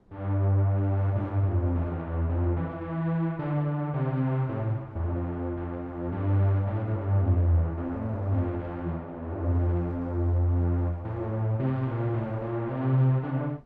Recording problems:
wind on the microphone; below 380 Hz, SNR 26 dB

